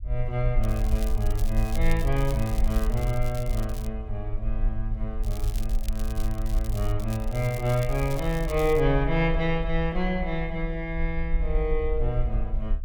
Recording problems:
low-frequency rumble; below 48 Hz, SNR 2 dB
crackling; from 0.5 to 4 s and from 5 to 9 s; loose cable, SNR 15 dB

